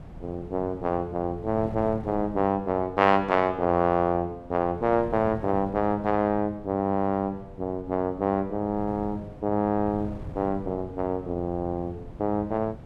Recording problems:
wind noise; below 240 Hz, SNR 16 dB

